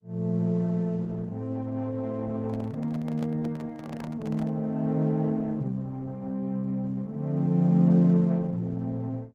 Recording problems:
lossy compression; Opus, log-spectral distance 2 dB
microphone handling noise; from 2.5 to 4.5 s; peak -8 dB vs average level

